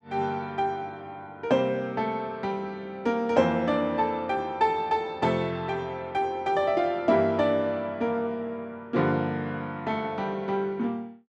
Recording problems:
none

